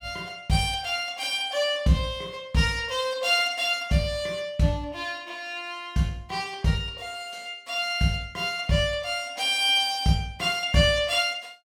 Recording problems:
none

